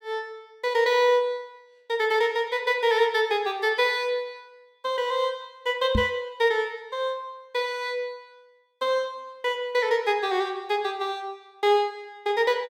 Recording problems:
microphone bump; at 6 s; peak +4 dB vs average level

